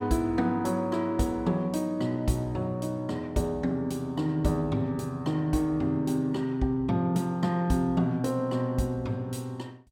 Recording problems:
none

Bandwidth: 17 kHz